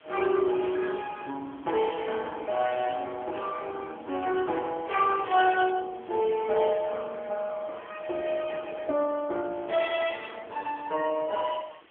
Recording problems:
phone line; 240 Hz to 3.1 kHz, AMR-NB
background hiss; SNR 27 dB

